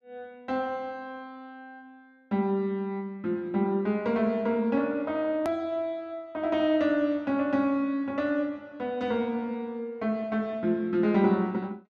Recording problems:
edit click; at 5.5 s

